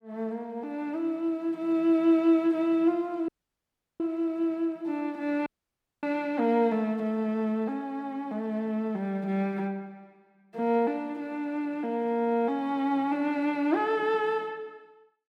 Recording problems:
audio cutting out; at 3.5 s for 0.5 s and at 5.5 s for 0.5 s

